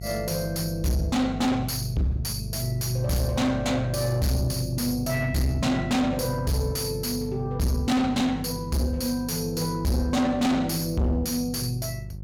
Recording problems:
distorted audio; soft clipping, signal-to-distortion ratio 6 dB
electrical hum; 50 Hz, harmonics up to 400 Hz, SNR 11 dB

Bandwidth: 17.5 kHz